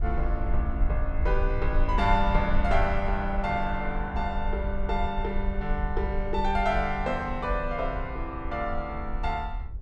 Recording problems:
wind noise; below 56 Hz, SNR 3 dB

